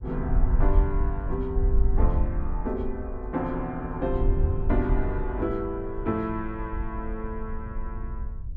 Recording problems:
wind noise; below 64 Hz, SNR -1 dB

